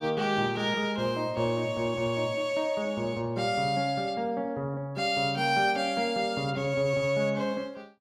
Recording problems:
none

